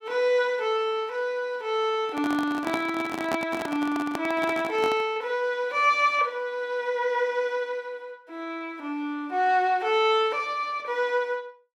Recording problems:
handling noise; from 2 to 5 s; peak 0 dB vs average level

